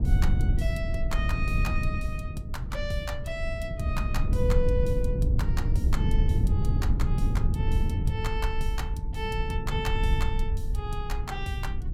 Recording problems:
low-frequency rumble; below 100 Hz, SNR -6 dB
wind noise; below 62 Hz, SNR 3 dB

